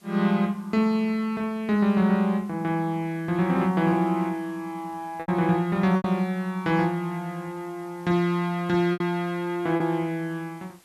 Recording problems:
hiss; slope -2 dB per octave, SNR 30 dB
packet loss; 3% of the sound replaced, filled with repeated pitch periods

